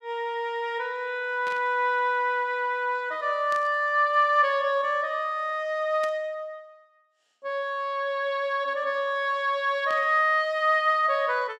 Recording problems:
static burst; 4 times, first at 1.5 s; peak -12 dB vs average level

